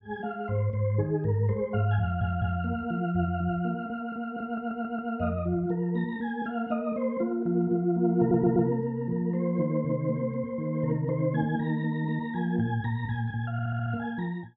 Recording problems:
audio stuttering; 4 times, first at 2 s

